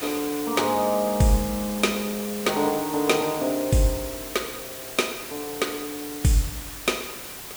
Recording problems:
background hiss; slope -1 dB per octave, SNR 9 dB

